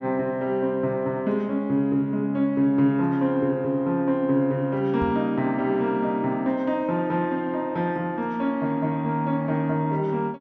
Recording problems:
microphone bump; at 5 s; peak -2 dB vs average level

